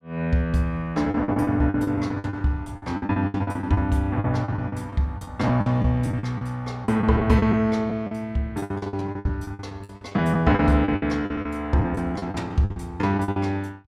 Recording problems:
lost packets; 18% of the sound replaced, filled with the last packet

